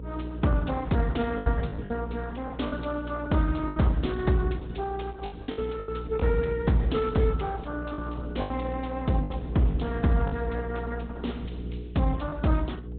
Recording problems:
treble missing; nothing above 3.9 kHz
codec artefacts; Opus, log-spectral distance 4 dB
hum; 60 Hz, harmonics up to 480 Hz, SNR 8 dB
packet loss; 6% of the sound replaced, filled with the last packet

